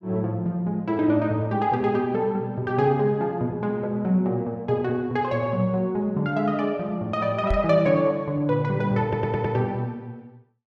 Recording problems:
knock on the microphone; at 7.5 s; peak +2 dB vs average level
audio stuttering; at 9 s

